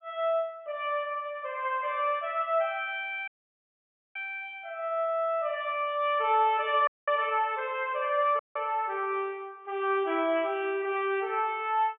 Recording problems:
treble cut off; nothing above 3.5 kHz
audio cutting out; at 3.5 s for 1 s, at 7 s and at 8.5 s

